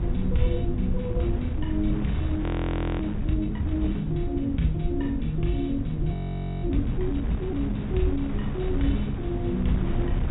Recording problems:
low-pass filter; nothing above 4 kHz
low-frequency rumble; below 130 Hz, SNR 2 dB
wind on the microphone; below 1.2 kHz, SNR 14 dB
frozen audio; at 2.5 s for 0.5 s and at 6 s

